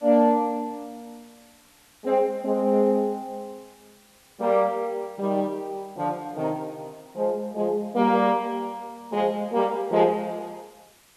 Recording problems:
background hiss; slope -1 dB per octave, SNR 29 dB

